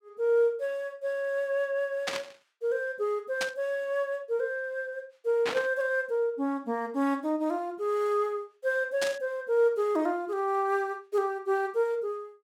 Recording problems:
static burst; 4 times, first at 2 s; peak +2 dB vs average level

